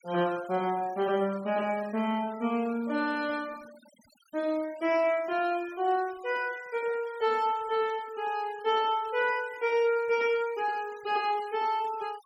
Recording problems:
denoising artefacts; signal-to-artefact ratio 21 dB

